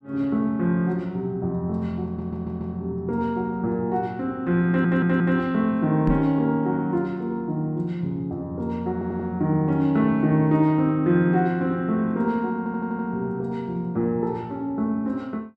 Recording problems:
stutter; 4 times, first at 2 s
microphone bump; at 6 s; peak +4 dB vs average level

